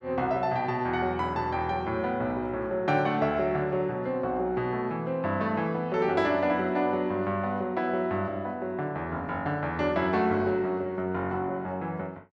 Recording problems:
none

